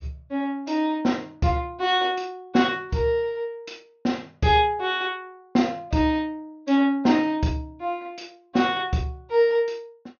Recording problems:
low-pass filter; nothing above 6.6 kHz

